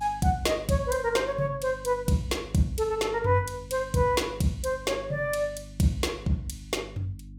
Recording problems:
hum; 50 Hz, harmonics up to 300 Hz, SNR 18 dB

